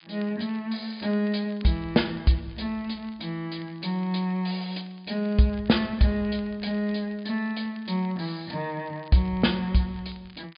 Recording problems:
treble missing; nothing above 4.9 kHz
crackle; vinyl, SNR 27 dB

